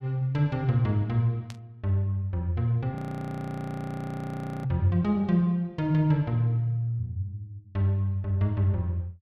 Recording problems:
static burst; at 1.5 s; peak -13 dB vs average level
audio freezing; at 3 s for 1.5 s

